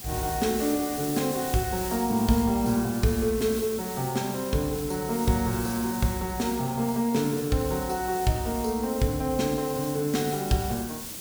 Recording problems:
hiss; SNR 9 dB

